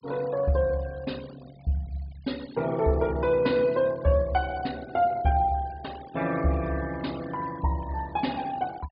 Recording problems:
treble missing; nothing above 5 kHz
denoising artefacts; signal-to-artefact ratio 21 dB

